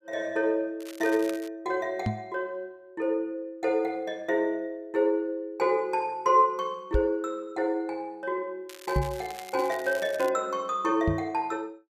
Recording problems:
crackle; at 1 s and from 8.5 to 10 s; loose cable, SNR 17 dB
microphone thump; 4 times, first at 2 s; peak +4 dB vs average level

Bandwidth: 14.5 kHz